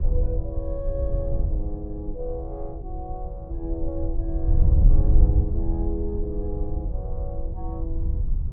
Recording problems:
wind on the microphone; below 72 Hz, SNR -8 dB

